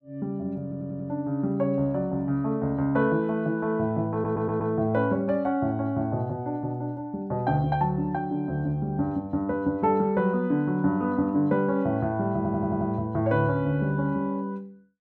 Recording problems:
audio stuttering; at 0.5 s, at 4 s and at 12 s

